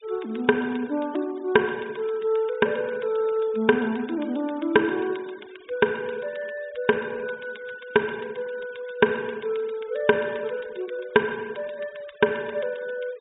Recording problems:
treble cut off; nothing above 4 kHz
denoising artefacts; signal-to-artefact ratio 24 dB

